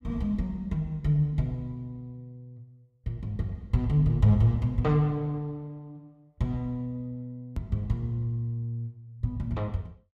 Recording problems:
hard cut with a click; at 7.5 s

